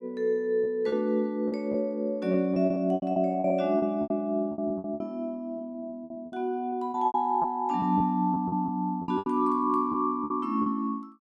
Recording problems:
packet loss; 14% of the sound replaced, filled with repeated pitch periods

